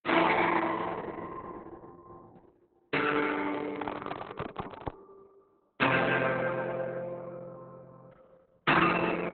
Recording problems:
lossy compression; Opus, log-spectral distance 5 dB, nothing above 4 kHz
microphone handling noise; from 3 to 5 s; peak +2 dB vs average level

